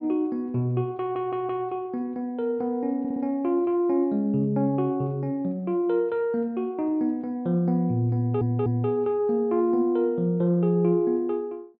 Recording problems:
audio stuttering; at 1 s, at 3 s and at 8 s

